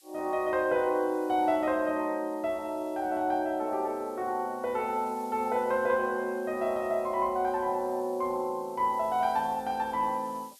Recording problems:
hiss; slope +5 dB per octave, SNR 27 dB

